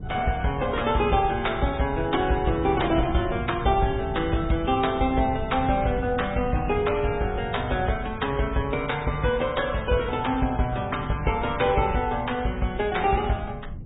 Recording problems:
treble cut off; nothing above 3.7 kHz
codec artefacts; MP3, log-spectral distance 4 dB
wind on the microphone; below 150 Hz, SNR 12 dB

